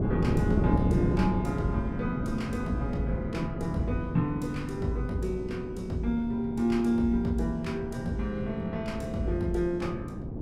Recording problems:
wind noise; below 300 Hz, SNR 3 dB

